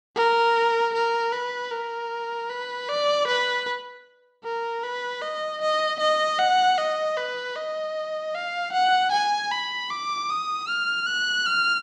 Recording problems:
none

